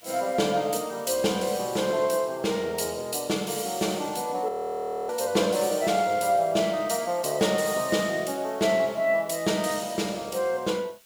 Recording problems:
background hiss; SNR 26 dB
frozen audio; at 4.5 s for 0.5 s

